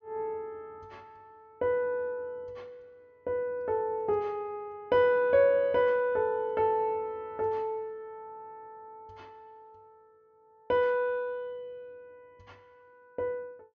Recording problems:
treble cut off; nothing above 7.2 kHz

